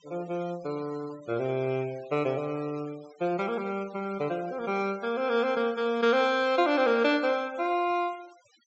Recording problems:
treble cut off; nothing above 7.9 kHz
denoising artefacts; signal-to-artefact ratio 22 dB

